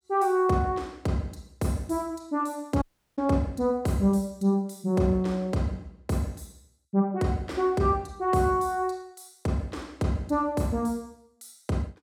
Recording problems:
dropout; at 3 s

